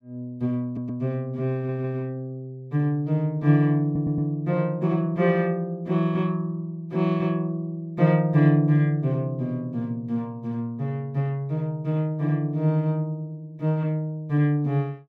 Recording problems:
audio stuttering; at 0.5 s, at 1.5 s and at 4 s

